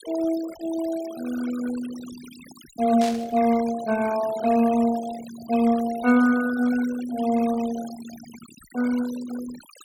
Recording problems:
denoising artefacts; signal-to-artefact ratio 17 dB
static burst; at 3 s; peak -6 dB vs average level

